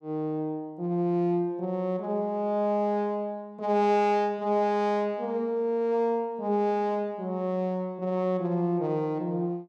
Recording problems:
none

